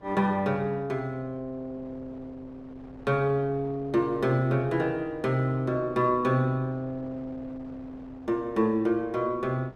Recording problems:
wind on the microphone; below 640 Hz, SNR 22 dB

